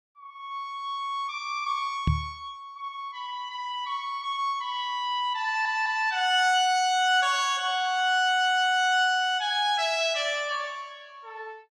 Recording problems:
knock on the microphone; at 2 s; peak +4 dB vs average level
audio stuttering; at 5.5 s and at 8 s

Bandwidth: 15 kHz